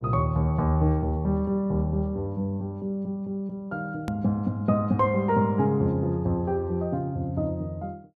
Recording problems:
click at an edit; at 4 s

